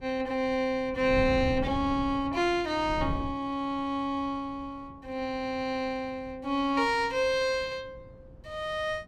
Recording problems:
wind on the microphone; below 170 Hz, SNR 12 dB

